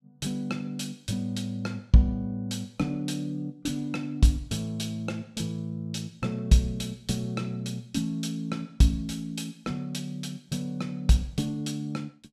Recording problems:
none

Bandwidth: 14.5 kHz